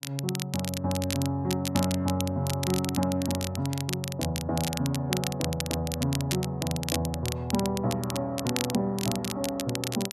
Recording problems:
crackling; vinyl, SNR 6 dB

